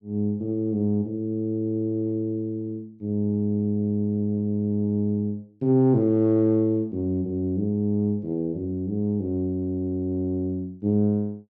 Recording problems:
none

